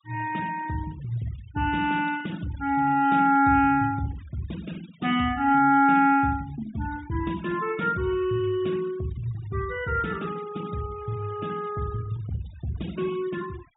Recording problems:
low-pass filter; nothing above 4 kHz
noise reduction artefacts; signal-to-artefact ratio 21 dB

